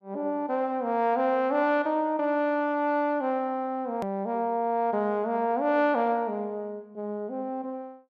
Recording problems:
hard cut with a click; at 4 s

